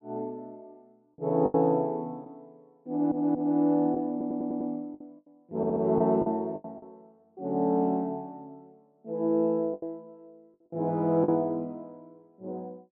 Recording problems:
packet loss; 6% of the sound replaced, filled with the last packet
audio stuttering; at 3 s, at 4 s and at 5.5 s

